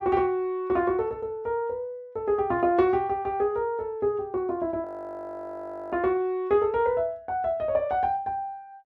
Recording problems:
audio freezing; at 5 s for 1 s

